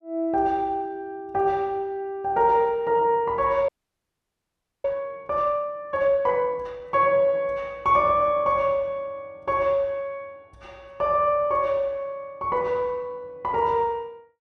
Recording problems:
frozen audio; at 3.5 s for 1 s

